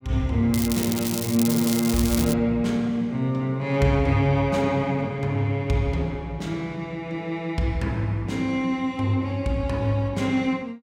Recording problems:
crackling; from 0.5 to 2.5 s; loose cable, SNR 6 dB

